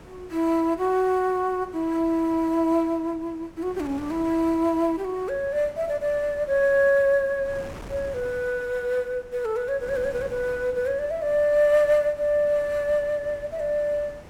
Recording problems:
wind on the microphone; below 820 Hz, SNR 21 dB

